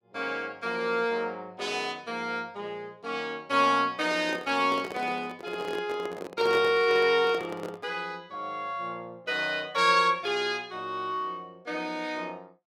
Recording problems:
handling noise; from 4 to 8 s; peak -4 dB vs average level

